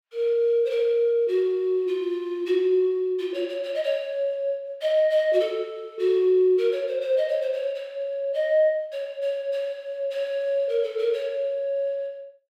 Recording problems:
none

